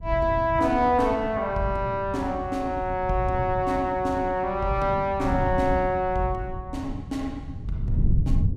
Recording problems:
wind on the microphone; below 130 Hz, SNR 8 dB

